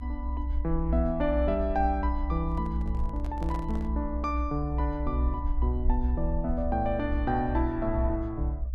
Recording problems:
low-frequency rumble; below 64 Hz, strongest tone 62 Hz, SNR 1 dB
microphone handling noise; from 2.5 to 4 s; peak -8 dB vs average level

